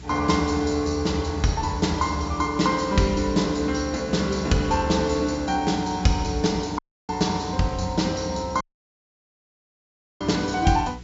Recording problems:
low-pass filter; nothing above 8 kHz
hum; 60 Hz, harmonics up to 420 Hz, SNR 18 dB
background hiss; SNR 25 dB
dropout; at 7 s and at 8.5 s for 1.5 s

